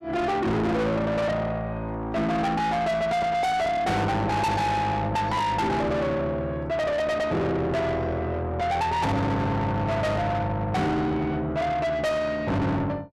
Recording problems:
distortion; soft clipping, signal-to-distortion ratio 6 dB

